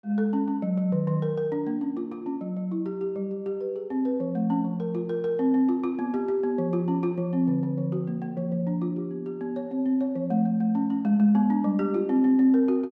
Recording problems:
none

